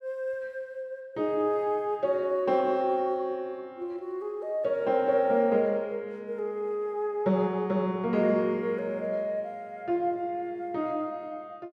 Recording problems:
none

